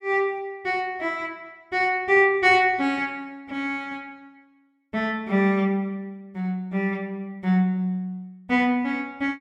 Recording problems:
none

